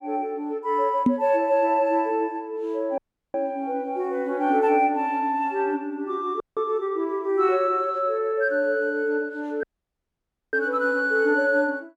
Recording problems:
microphone thump; at 1 s; peak +7 dB vs average level
dropout; at 3 s, at 6.5 s and at 9.5 s for 1 s

